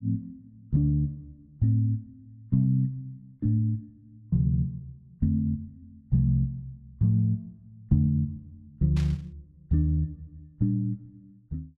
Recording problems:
static burst; at 9 s; peak -12 dB vs average level

